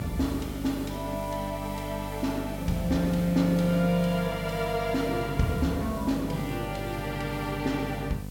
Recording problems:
hum; 50 Hz, harmonics up to 750 Hz, SNR 9 dB
hiss; slope +3 dB per octave, SNR 18 dB

